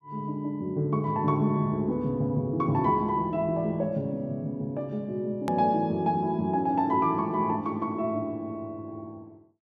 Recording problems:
click at an edit; at 5.5 s

